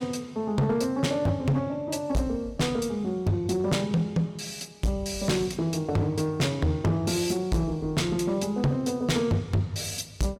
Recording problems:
distorted audio; hard clipping, signal-to-distortion ratio 7 dB

